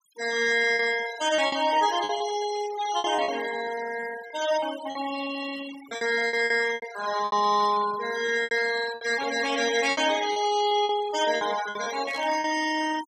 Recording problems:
denoising artefacts; signal-to-artefact ratio 11 dB
lost packets; 10% of the sound replaced, filled with repeated pitch periods
burst of static; at 12 s; peak -13 dB vs average level

